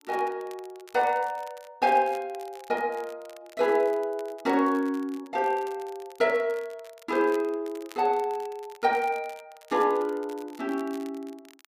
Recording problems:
crackle; vinyl, SNR 25 dB

